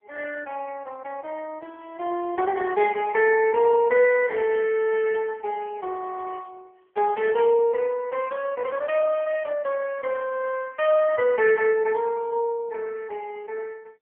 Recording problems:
telephone audio; 300 Hz to 2.9 kHz, AMR-NB

